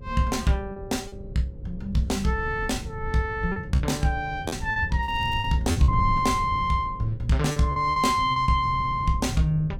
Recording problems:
hum; 60 Hz, harmonics up to 600 Hz, SNR 26 dB
wind noise; below 130 Hz, SNR 10 dB
lost packets; 6% of the sound replaced, filled with repeated pitch periods
crackle; at 5 s; loose cable, SNR 29 dB

